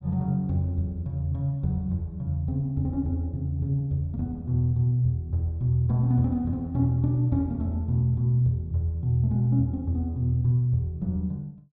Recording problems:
none

